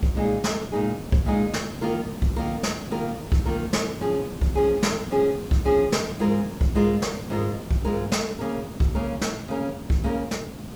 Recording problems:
hiss; SNR 11 dB

